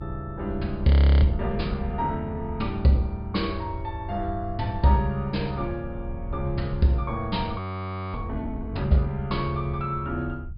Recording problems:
treble cut off; nothing above 5.1 kHz
rumble; below 88 Hz, SNR 10 dB
frozen audio; at 1 s and at 7.5 s for 0.5 s

